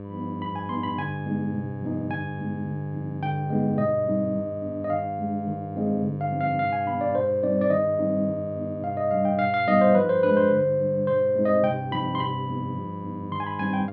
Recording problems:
hum; 50 Hz, harmonics up to 1.2 kHz, SNR 12 dB

